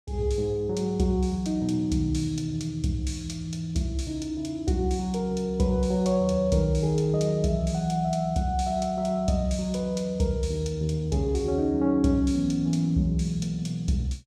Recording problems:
none

